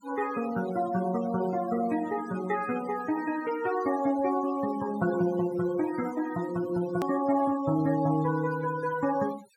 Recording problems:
denoising artefacts; signal-to-artefact ratio 15 dB
click at an edit; at 7 s

